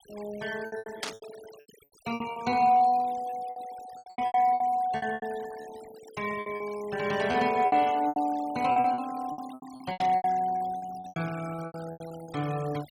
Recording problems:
noise reduction artefacts; signal-to-artefact ratio 19 dB
packet loss; 18% of the sound replaced, filled with repeated pitch periods
static burst; at 1 s and at 10 s; peak 0 dB vs average level

